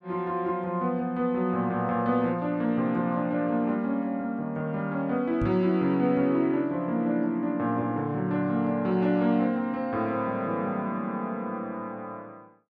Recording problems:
microphone thump; at 5.5 s; peak -1 dB vs average level

